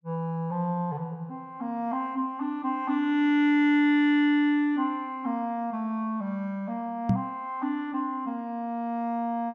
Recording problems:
microphone thump; at 7 s; peak +7 dB vs average level

